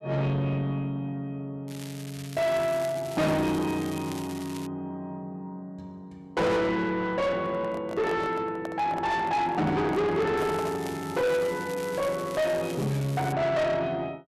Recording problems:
distorted audio; soft clipping, signal-to-distortion ratio 6 dB
crackling; from 1.5 to 4.5 s and from 10 to 13 s; loose cable, SNR 16 dB
microphone handling noise; from 7.5 to 11 s; peak -2 dB vs average level

